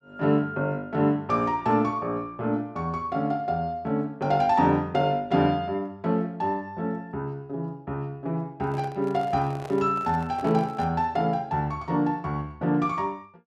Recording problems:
handling noise; from 8.5 to 11 s; peak -9 dB vs average level

